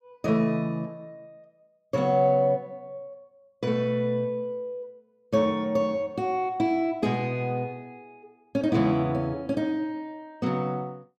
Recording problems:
none

